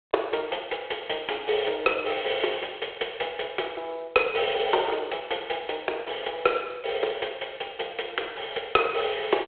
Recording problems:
telephone audio; 340 Hz to 3.4 kHz, G.726

